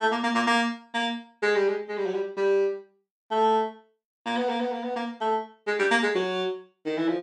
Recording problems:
none

